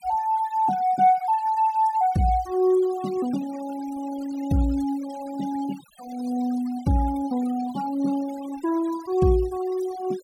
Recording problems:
denoising artefacts; signal-to-artefact ratio 20 dB

